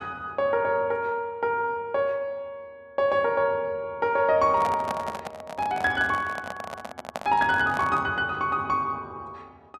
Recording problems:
microphone handling noise; from 4.5 to 8 s; peak -2 dB vs average level

